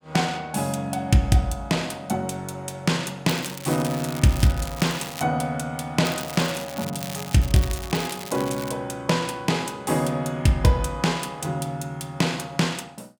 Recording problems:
crackle; from 3.5 to 5 s and from 6 to 8.5 s; loose cable, SNR 12 dB

